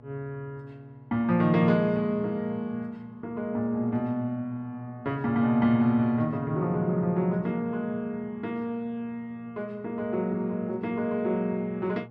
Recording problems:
hum; 60 Hz, harmonics up to 1.1 kHz, SNR 21 dB

